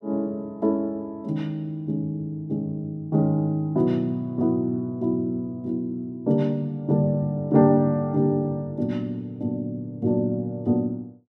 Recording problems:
none

